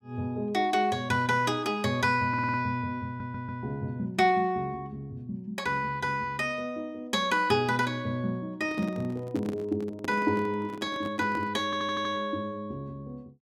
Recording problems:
stutter; at 2.5 s, at 3 s and at 12 s
microphone handling noise; from 8.5 to 12 s; peak -3 dB vs average level

